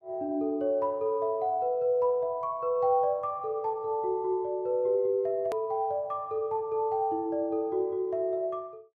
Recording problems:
edit click; at 5.5 s

